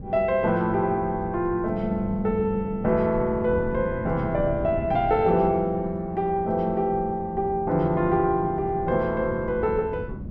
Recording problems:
wind noise; below 220 Hz, SNR 12 dB

